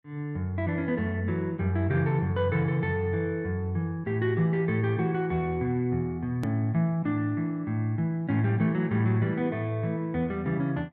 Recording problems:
hard cut with a click; at 6.5 s

